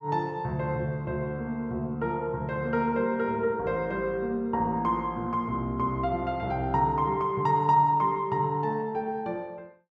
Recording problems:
none

